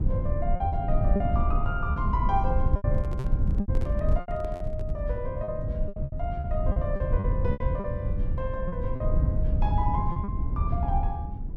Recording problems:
low-frequency rumble; below 100 Hz, SNR -5 dB
packet loss; 10% of the sound replaced, filled with repeated pitch periods
microphone handling noise; from 2.5 to 5 s; peak -3 dB vs average level

